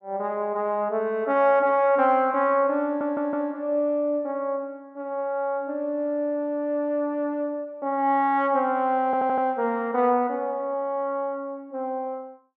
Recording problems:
audio stuttering; at 3 s and at 9 s

